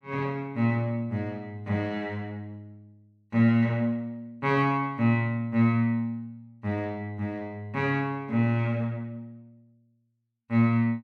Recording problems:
none

